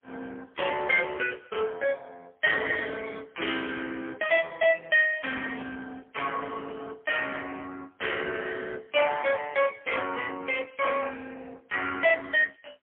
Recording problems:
telephone audio; 300 Hz to 3.1 kHz, AMR-NB, then MP3

